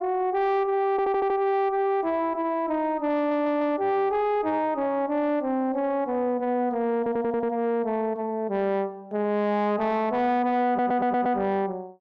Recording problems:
distorted audio; soft clipping, signal-to-distortion ratio 11 dB
audio stuttering; 4 times, first at 1 s

